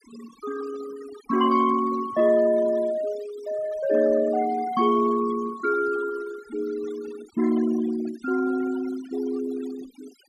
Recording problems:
noise reduction artefacts; signal-to-artefact ratio 17 dB

